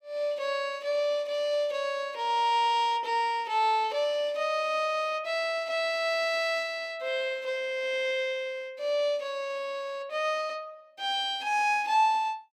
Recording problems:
none

